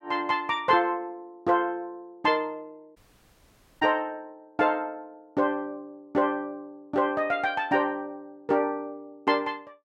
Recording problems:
audio cutting out; at 3 s for 1 s

